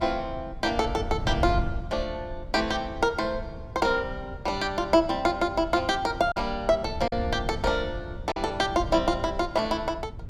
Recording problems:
wind noise; below 120 Hz, SNR 10 dB
lost packets; 1.2% of the sound replaced, filled with silence

